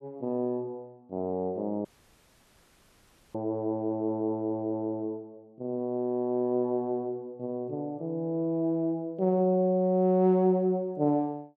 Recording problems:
audio cutting out; at 2 s for 1.5 s

